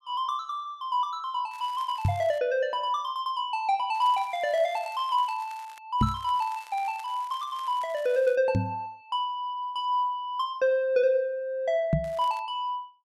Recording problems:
crackle; 4 times, first at 1.5 s; loose cable, SNR 24 dB
knock on the microphone; 4 times, first at 2 s; peak +7 dB vs average level

